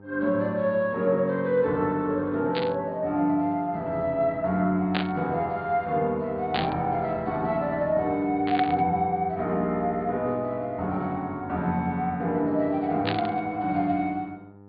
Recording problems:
treble cut off; nothing above 4.6 kHz
mains hum; 50 Hz, harmonics up to 1.4 kHz, SNR 23 dB
burst of static; 5 times, first at 2.5 s; peak +2 dB vs average level

